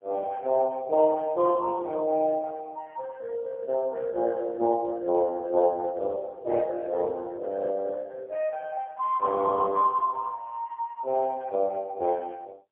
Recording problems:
phone line; 370 Hz to 2.1 kHz, AMR-NB, then MP3

